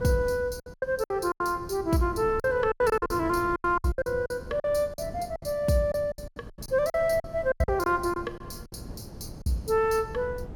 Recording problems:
wind on the microphone; below 260 Hz, SNR 16 dB
lost packets; 15% of the sound replaced, filled with silence

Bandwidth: 17.5 kHz